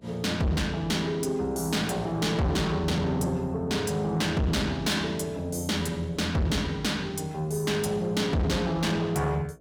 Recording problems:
distortion; soft clipping, signal-to-distortion ratio 7 dB
hum; 60 Hz, harmonics up to 660 Hz, SNR 29 dB

